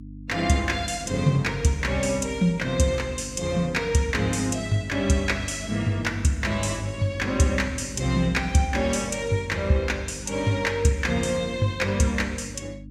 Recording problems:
hum; 50 Hz, harmonics up to 300 Hz, SNR 15 dB

